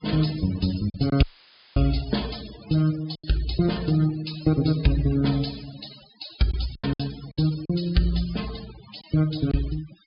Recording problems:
treble missing; nothing above 5.1 kHz
noise reduction artefacts; signal-to-artefact ratio 16 dB
lost packets; 5% of the sound replaced, filled with silence
dropout; at 1 s for 0.5 s; filled with static

